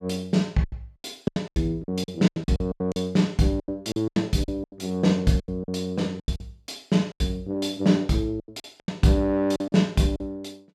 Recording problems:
packet loss; 16% of the sound replaced, filled with silence

